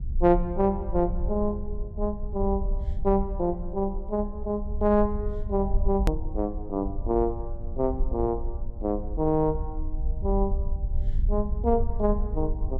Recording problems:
low-frequency rumble; below 58 Hz, SNR 5 dB
click at an edit; at 6 s

